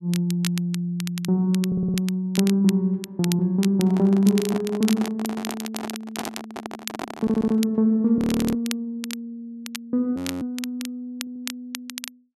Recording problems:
crackle; vinyl, SNR 13 dB
audio stuttering; at 1.5 s, at 7 s and at 11 s
microphone handling noise; from 4 to 7.5 s; peak -5 dB vs average level
frozen audio; at 8 s and at 10 s

